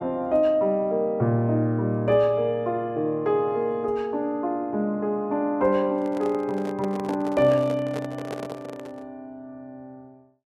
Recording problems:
microphone handling noise; from 6 to 9 s; peak -6 dB vs average level

